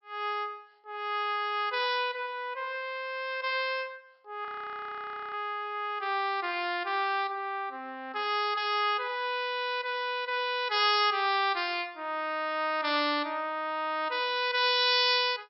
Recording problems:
treble cut off; nothing above 5.4 kHz
frozen audio; at 4.5 s for 1 s

